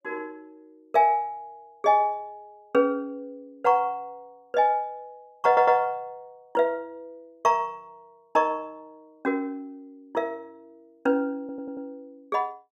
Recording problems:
audio stuttering; at 5.5 s and at 11 s

